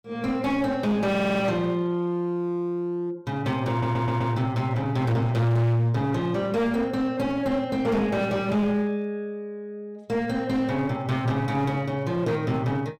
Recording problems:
distorted audio; hard clipping, uneven, signal-to-distortion ratio 7 dB
stutter; at 1 s and at 3.5 s

